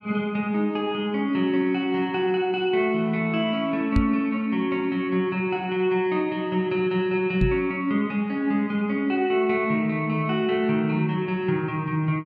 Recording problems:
microphone thump; at 4 s and at 7.5 s; peak +4 dB vs average level

